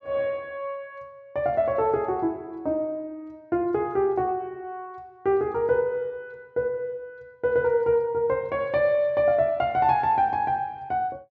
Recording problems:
low-pass filter; nothing above 8 kHz

